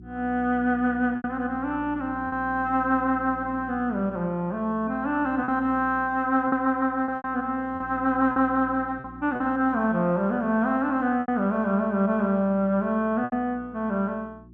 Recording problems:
hum; 60 Hz, harmonics up to 360 Hz, SNR 20 dB
lost packets; 4% of the sound replaced, filled with repeated pitch periods

